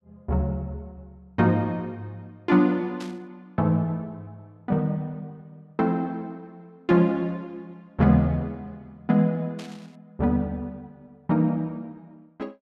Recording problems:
burst of static; at 3 s and at 9.5 s; peak -12 dB vs average level

